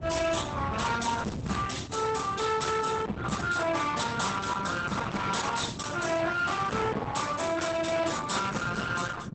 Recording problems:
codec artefacts; Opus, then Opus, log-spectral distance 7 dB, nothing above 8.2 kHz
distorted audio; hard clipping, signal-to-distortion ratio 7 dB
rumble; below 440 Hz, SNR 10 dB

